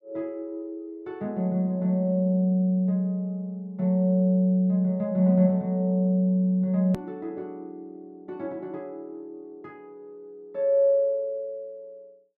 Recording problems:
click at an edit; at 7 s

